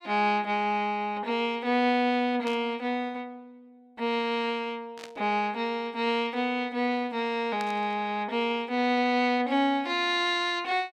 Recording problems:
burst of static; at 2.5 s, at 5 s and at 7.5 s; peak -9 dB vs average level

